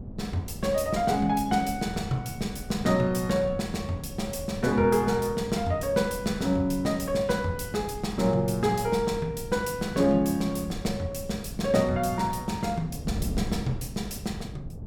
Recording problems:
wind noise; below 200 Hz, SNR 12 dB

